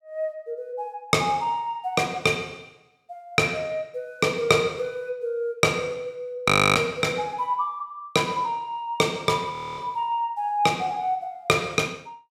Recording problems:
frozen audio; at 6.5 s and at 9.5 s

